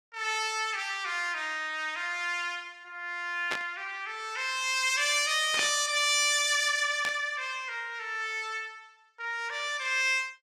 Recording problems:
burst of static; at 3.5 s, at 5.5 s and at 7 s; peak -1 dB vs average level

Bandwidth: 15.5 kHz